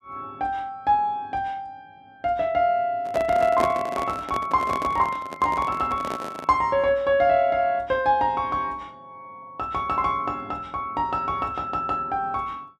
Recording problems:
handling noise; from 3 to 6.5 s; peak 0 dB vs average level

